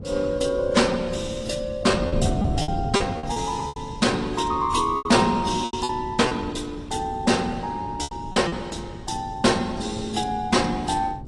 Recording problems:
lossy codec; AAC, log-spectral distance 3 dB
distorted audio; hard clipping, signal-to-distortion ratio 12 dB
wind noise; below 220 Hz, SNR 10 dB
packet loss; 7% of the sound replaced, filled with repeated pitch periods

